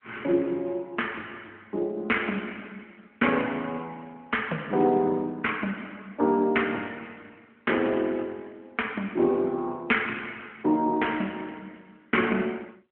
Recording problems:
telephone audio; 260 Hz to 3.2 kHz, AMR-NB

